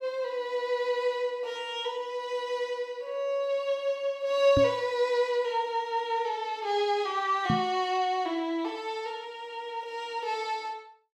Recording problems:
microphone thump; at 4.5 s and at 7.5 s; peak +5 dB vs average level

